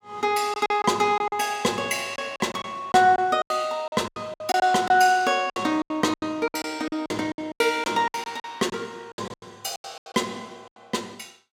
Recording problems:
packet loss; 15% of the sound replaced, filled with silence

